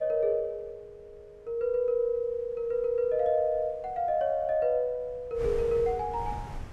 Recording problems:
wind on the microphone; below 170 Hz, SNR 17 dB

